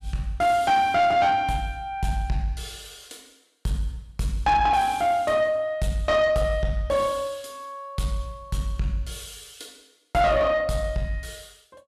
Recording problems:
distortion; soft clipping, signal-to-distortion ratio 11 dB

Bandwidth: 15 kHz